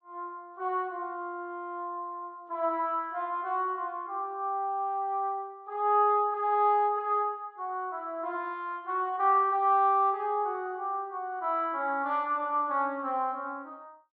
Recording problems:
treble cut off; nothing above 8 kHz

